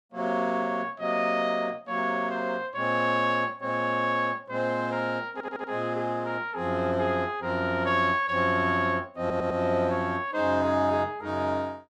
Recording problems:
stutter; at 5.5 s and at 9 s

